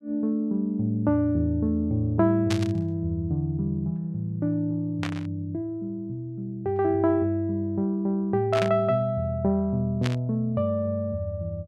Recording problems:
burst of static; 4 times, first at 2.5 s; peak -1 dB vs average level

